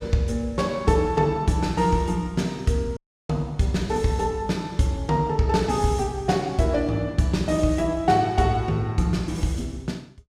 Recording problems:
dropout; at 3 s

